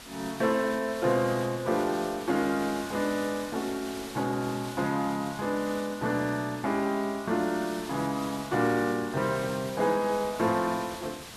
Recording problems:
hiss; slope -2 dB per octave, SNR 14 dB

